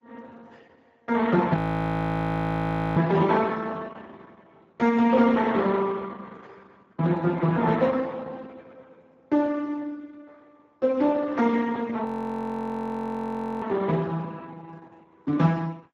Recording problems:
lossy codec; Opus, then Speex, log-spectral distance 3 dB, nothing above 13.1 kHz
frozen audio; at 1.5 s for 1.5 s and at 12 s for 1.5 s

